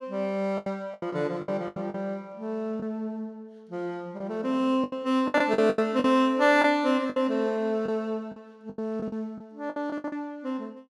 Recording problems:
packet loss; 11% of the sound replaced, filled with the last packet

